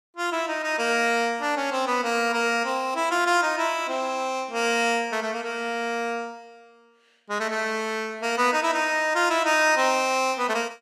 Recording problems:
none

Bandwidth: 14.5 kHz